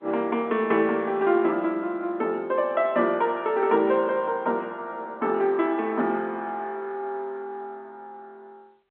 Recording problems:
phone line; 240 Hz to 3.6 kHz, G.711

